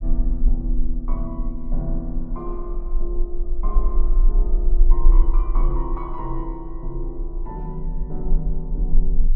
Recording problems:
low-frequency rumble; below 34 Hz, strongest tone 18 Hz, SNR -8 dB

